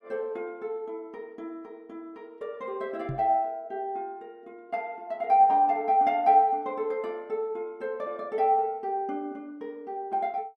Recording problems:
microphone bump; at 3 s; peak -4 dB vs average level

